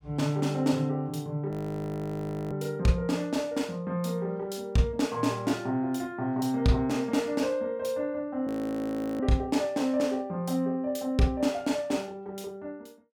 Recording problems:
audio freezing; at 1.5 s for 1 s and at 8.5 s for 0.5 s

